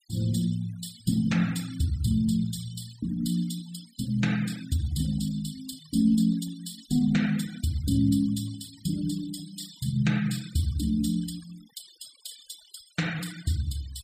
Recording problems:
noise reduction artefacts; signal-to-artefact ratio 17 dB

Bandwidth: 15 kHz